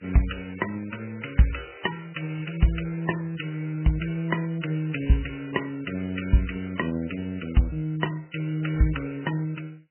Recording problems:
lossy compression; MP3, log-spectral distance 6 dB, nothing above 3 kHz

